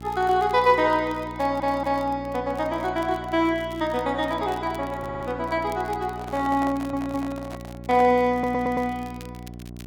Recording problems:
hum; 60 Hz, harmonics up to 780 Hz, SNR 15 dB
crackling; vinyl, SNR 27 dB
stutter; 4 times, first at 1.5 s
handling noise; from 6 to 8 s; peak -8 dB vs average level

